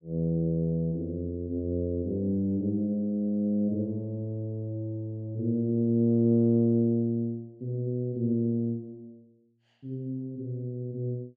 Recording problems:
none

